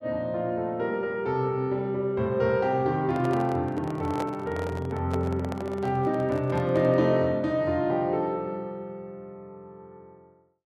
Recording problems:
handling noise; from 3 to 7 s; peak -4 dB vs average level

